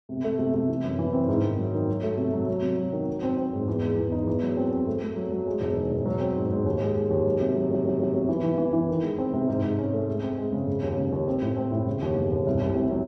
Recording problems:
audio stuttering; at 7.5 s

